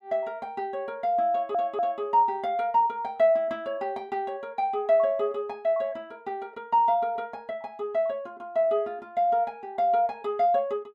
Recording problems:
audio stuttering; at 1.5 s

